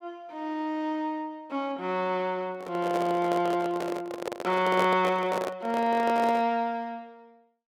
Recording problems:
handling noise; from 2.5 to 6.5 s; peak +2 dB vs average level

